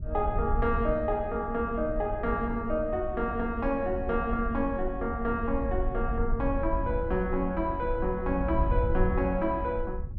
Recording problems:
wind noise; below 70 Hz, SNR 6 dB

